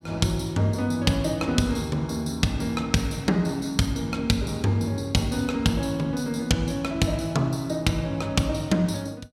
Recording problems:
none

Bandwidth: 16 kHz